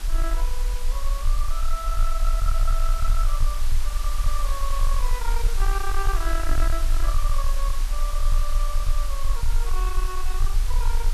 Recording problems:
distortion; soft clipping, signal-to-distortion ratio 11 dB
background hiss; slope 0 dB per octave, SNR 5 dB
rumble; below 36 Hz, strongest tone 18 Hz, SNR -6 dB
microphone bump; at 6.5 s; peak 0 dB vs average level

